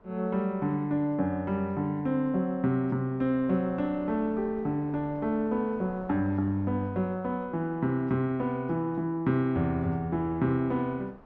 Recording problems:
wind on the microphone; below 850 Hz, SNR 24 dB

